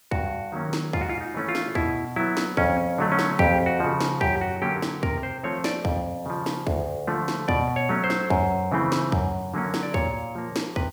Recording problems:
hiss; slope +1 dB per octave, SNR 25 dB

